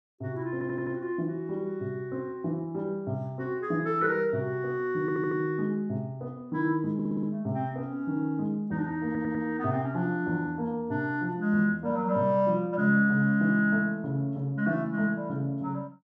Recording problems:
audio stuttering; 4 times, first at 0.5 s

